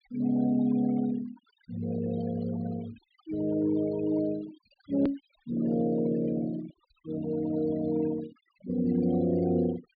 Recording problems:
treble cut off; nothing above 4.8 kHz
denoising artefacts; signal-to-artefact ratio 17 dB
edit click; at 5 s

